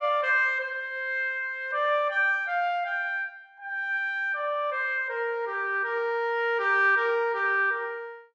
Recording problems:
none

